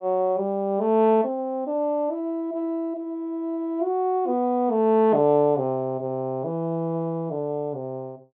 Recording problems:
treble missing; nothing above 4 kHz

